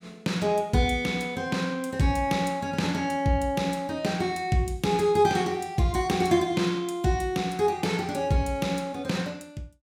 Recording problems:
none

